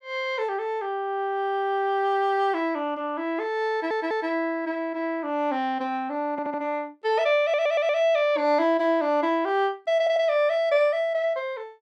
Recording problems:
audio stuttering; 4 times, first at 3.5 s

